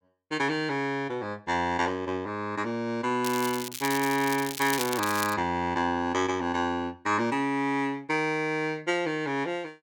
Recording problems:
crackle; from 3 to 5.5 s; loose cable, SNR 7 dB

